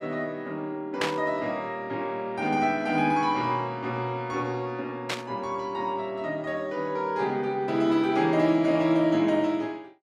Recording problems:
static burst; at 1 s and at 5 s; peak +3 dB vs average level

